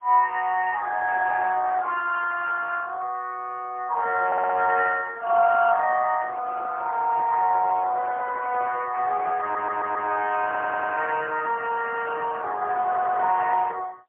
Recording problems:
phone line; 320 Hz to 3.1 kHz, AMR-NB, then MP3
stutter; 4 times, first at 4.5 s
microphone handling noise; from 5.5 to 10 s; peak -14 dB vs average level

